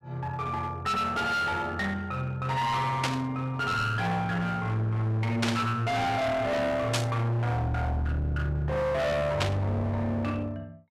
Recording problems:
distortion; hard clipping, uneven, signal-to-distortion ratio 6 dB
static burst; 4 times, first at 3 s; peak +4 dB vs average level

